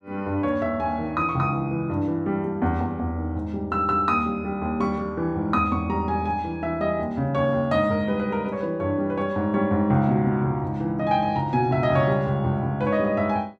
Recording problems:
none

